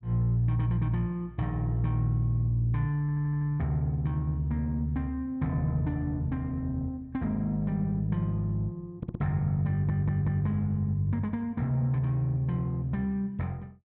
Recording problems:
audio stuttering; at 3 s, at 9 s and at 9.5 s

